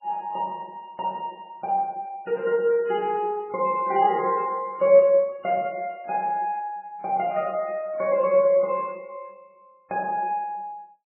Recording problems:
lossy codec; MP3, log-spectral distance 2 dB, nothing above 2.9 kHz

